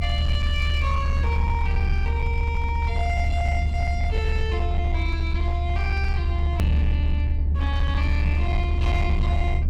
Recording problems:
distorted audio; hard clipping, signal-to-distortion ratio 12 dB
low-frequency rumble; below 76 Hz, strongest tone 72 Hz, SNR -6 dB
hard cut with a click; at 6.5 s

